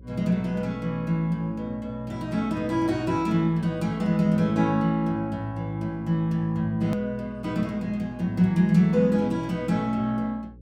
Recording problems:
hum; 60 Hz, harmonics up to 540 Hz, SNR 22 dB
edit click; at 7 s

